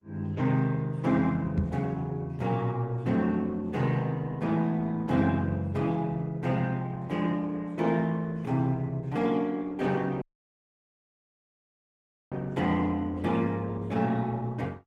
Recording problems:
lossy codec; Opus, then Opus, log-spectral distance 2 dB, nothing above 17.7 kHz
microphone thump; at 1.5 s; peak +4 dB vs average level
dropout; at 10 s for 2 s

